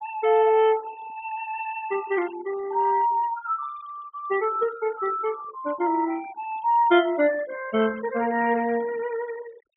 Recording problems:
treble cut off; nothing above 4 kHz
noise reduction artefacts; signal-to-artefact ratio 19 dB

